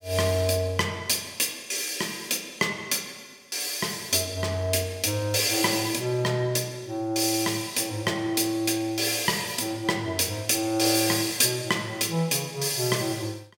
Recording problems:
none

